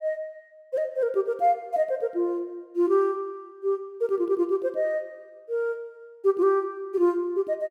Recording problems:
none

